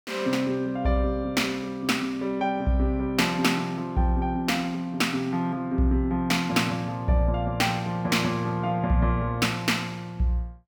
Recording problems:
none

